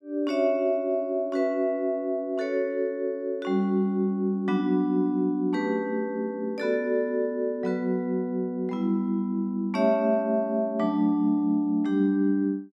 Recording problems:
none

